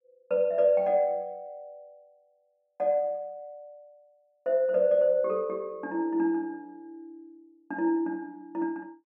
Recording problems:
none

